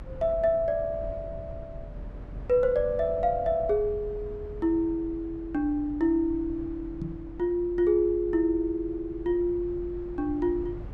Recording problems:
rumble; below 130 Hz, strongest tone 44 Hz, SNR 15 dB
microphone thump; at 7 s; peak -4 dB vs average level

